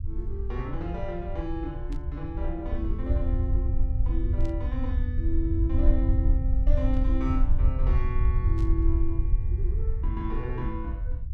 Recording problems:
low-frequency rumble; below 70 Hz, SNR -7 dB
static burst; 4 times, first at 2 s; peak -12 dB vs average level

